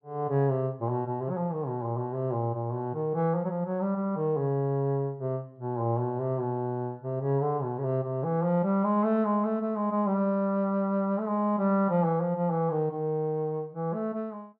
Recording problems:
none

